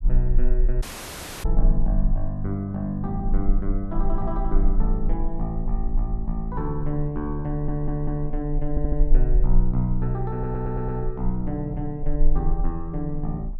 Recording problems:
rumble; below 34 Hz, strongest tone 18 Hz, SNR 0 dB
audio cutting out; at 1 s for 0.5 s
audio stuttering; at 7.5 s, at 8.5 s and at 10 s

